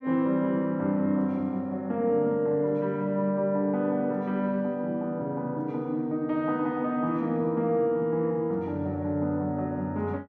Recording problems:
none

